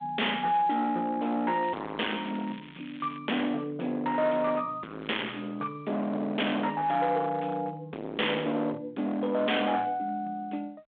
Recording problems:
telephone audio; 240 Hz to 3.4 kHz, G.726
distortion; hard clipping, uneven, signal-to-distortion ratio 5 dB
crackling; from 1.5 to 3 s and at 5 s; loose cable, SNR 21 dB

